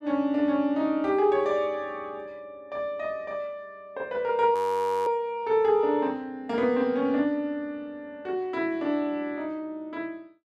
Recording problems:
frozen audio; at 4.5 s for 0.5 s

